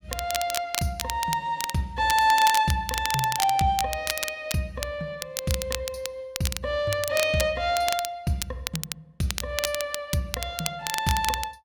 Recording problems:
crackling; vinyl, SNR 6 dB

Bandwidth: 17 kHz